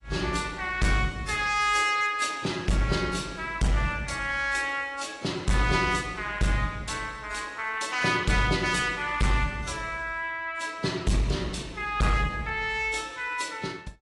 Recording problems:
codec artefacts; AAC, log-spectral distance 4 dB, nothing above 10.4 kHz
distorted audio; hard clipping, signal-to-distortion ratio 10 dB

